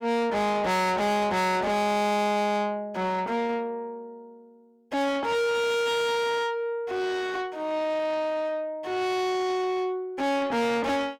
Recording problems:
distorted audio; soft clipping, signal-to-distortion ratio 6 dB

